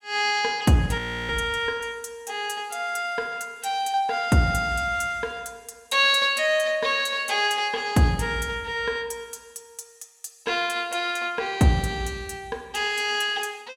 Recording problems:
frozen audio; at 1 s

